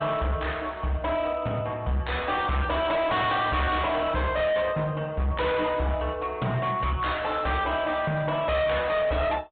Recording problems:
low-pass filter; nothing above 3.7 kHz
codec artefacts; Opus, log-spectral distance 3 dB
distortion; hard clipping, signal-to-distortion ratio 8 dB

